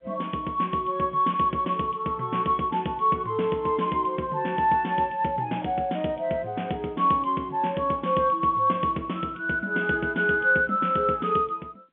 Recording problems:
telephone audio; 170 Hz to 3.4 kHz, G.711

